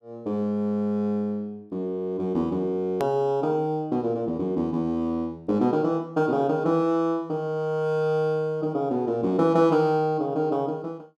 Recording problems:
hard cut with a click; at 3 s

